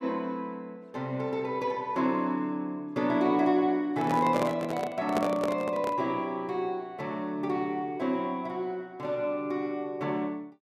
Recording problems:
handling noise; from 4 to 6 s; peak +3 dB vs average level

